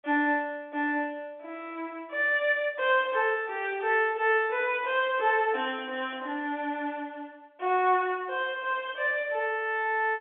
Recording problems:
phone line; 260 Hz to 3.5 kHz, G.711

